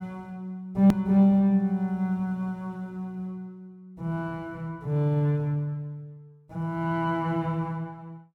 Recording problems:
click at an edit; at 1 s

